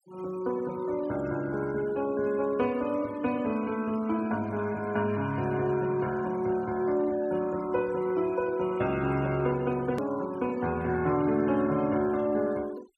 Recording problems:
denoising artefacts; signal-to-artefact ratio 20 dB
click at an edit; at 10 s

